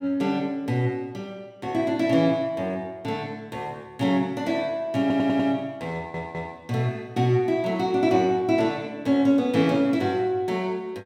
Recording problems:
audio stuttering; at 5 s and at 6 s

